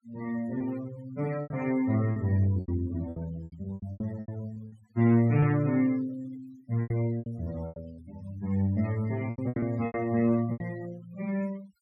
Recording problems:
noise reduction artefacts; signal-to-artefact ratio 21 dB
packet loss; 12% of the sound replaced, filled with repeated pitch periods

